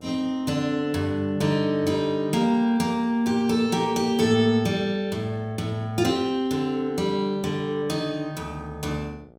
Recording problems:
electrical hum; 60 Hz, harmonics up to 1.4 kHz, SNR 28 dB

